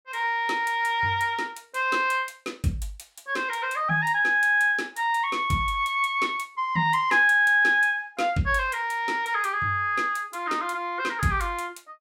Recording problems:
none

